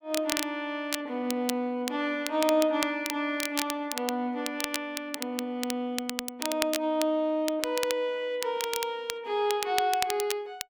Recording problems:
crackling; vinyl, SNR 6 dB

